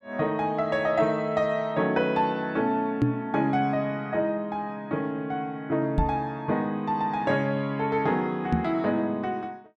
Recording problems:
knock on the microphone; at 3 s, at 6 s and at 8.5 s; peak +7 dB vs average level

